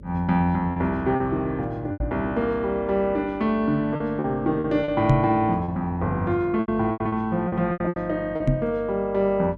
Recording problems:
hum; 50 Hz, harmonics up to 600 Hz, SNR 19 dB
packet loss; 8% of the sound replaced, filled with repeated pitch periods
knock on the microphone; at 2 s, at 5 s and at 8.5 s; peak +8 dB vs average level

